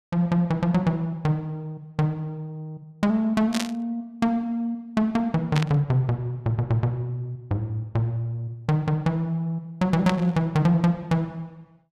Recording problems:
static burst; at 3.5 s, at 5.5 s and at 10 s; peak 0 dB vs average level

